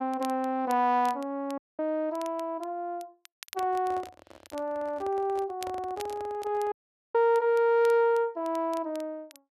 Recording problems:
crackling; vinyl, SNR 23 dB
audio cutting out; at 1.5 s and at 6.5 s
handling noise; from 3.5 to 6.5 s; peak -10 dB vs average level

